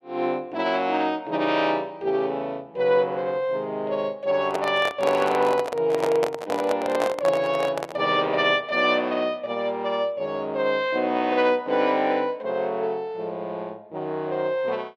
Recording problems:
microphone handling noise; from 4.5 to 8 s; peak +2 dB vs average level

